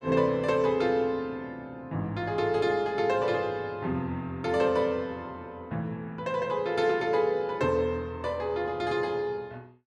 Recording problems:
none

